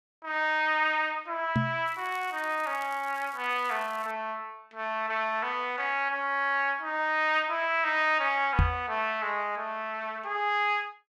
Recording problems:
knock on the microphone; at 1.5 s and at 8.5 s; peak +7 dB vs average level
crackling; from 2 to 4 s; loose cable, SNR 24 dB

